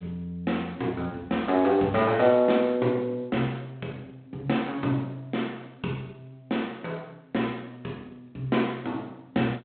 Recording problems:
phone line; 190 Hz to 3.7 kHz, G.726

